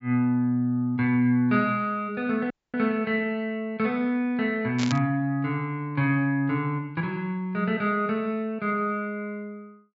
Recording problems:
low-pass filter; nothing above 8 kHz
audio cutting out; at 2.5 s
burst of static; at 5 s; peak -2 dB vs average level

